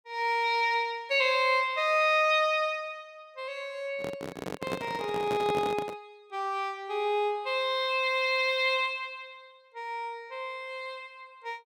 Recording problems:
handling noise; from 4 to 6 s; peak -1 dB vs average level

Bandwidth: 17 kHz